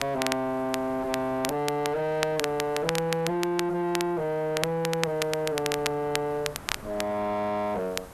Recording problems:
distortion; soft clipping, signal-to-distortion ratio 6 dB
hiss; SNR 23 dB
wind noise; below 1.3 kHz, SNR 17 dB
crackling; vinyl, SNR 7 dB

